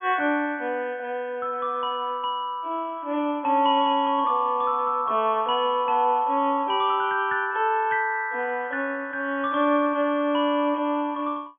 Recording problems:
treble cut off; nothing above 3.4 kHz

